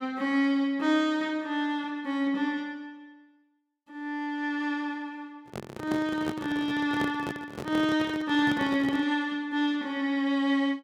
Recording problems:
handling noise; from 5.5 to 9 s; peak -1 dB vs average level

